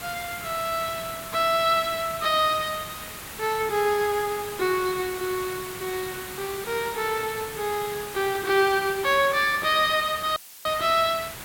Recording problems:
background hiss; SNR 11 dB
dropout; at 10 s; filled with static

